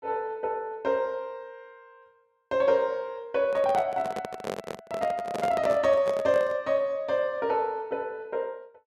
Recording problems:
microphone handling noise; from 3.5 to 6.5 s; peak -1 dB vs average level

